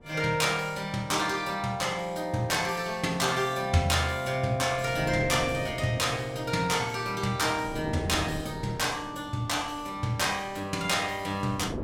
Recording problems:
wind noise; below 440 Hz, SNR 14 dB

